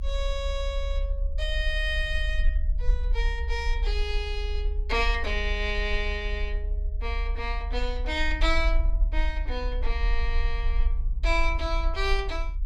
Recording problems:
rumble; below 48 Hz, strongest tone 36 Hz, SNR 0 dB

